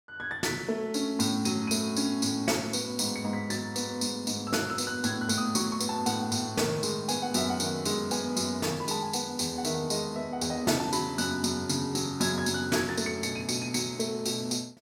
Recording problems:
none

